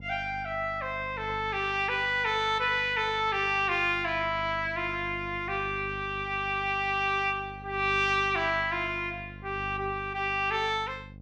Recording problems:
hum; 50 Hz, harmonics up to 600 Hz, SNR 17 dB

